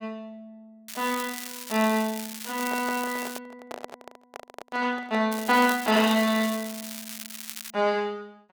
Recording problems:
crackle; from 1 to 3.5 s and from 5.5 to 7.5 s; loose cable, SNR 11 dB
microphone handling noise; from 2.5 to 6 s; peak -6 dB vs average level

